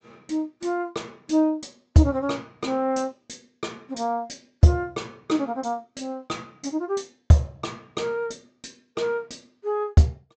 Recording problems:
low-pass filter; nothing above 8 kHz

